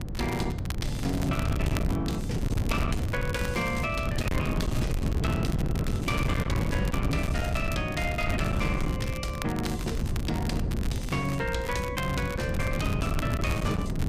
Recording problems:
distortion; hard clipping, signal-to-distortion ratio 8 dB
wind noise; below 210 Hz, SNR -1 dB
crackling; vinyl, SNR 12 dB

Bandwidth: 15 kHz